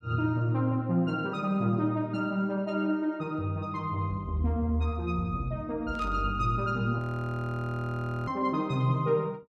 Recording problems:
static burst; at 6 s; peak -13 dB vs average level
frozen audio; at 7 s for 1.5 s

